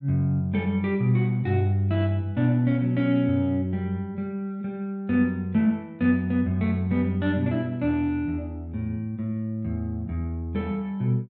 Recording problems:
none

